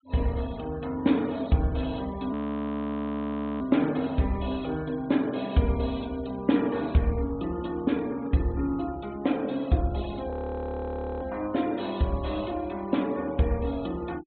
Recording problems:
low-pass filter; nothing above 4 kHz
denoising artefacts; signal-to-artefact ratio 23 dB
audio freezing; at 2.5 s for 1.5 s and at 10 s for 1 s

